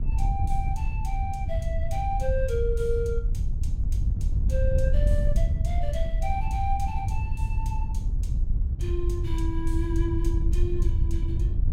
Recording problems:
wind noise; below 76 Hz, SNR -5 dB

